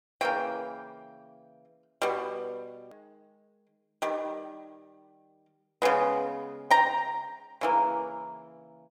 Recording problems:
hard cut with a click; at 3 s

